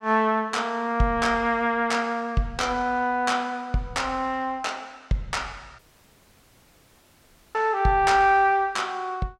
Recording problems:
dropout; at 6 s for 2 s

